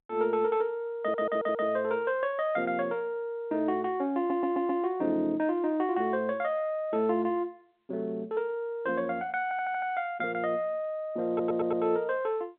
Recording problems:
phone line; 220 Hz to 3.7 kHz, G.711
stutter; 4 times, first at 1 s

